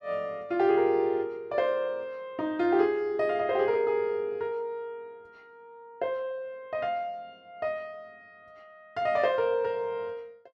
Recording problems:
none

